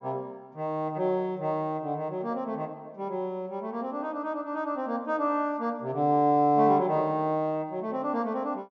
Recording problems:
low-pass filter; nothing above 7.1 kHz

